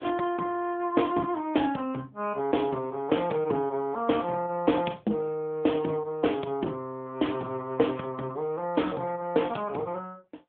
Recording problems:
telephone audio; 190 Hz to 3.4 kHz, AMR-NB

